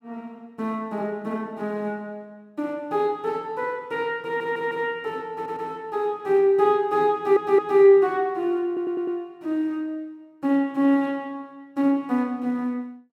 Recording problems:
audio stuttering; 4 times, first at 4.5 s

